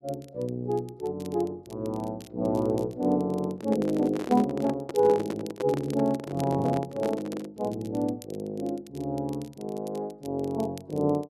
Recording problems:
crackling; vinyl, SNR 24 dB
lost packets; 0.4% of the sound replaced, filled with the last packet
handling noise; from 3.5 to 7.5 s; peak +1 dB vs average level

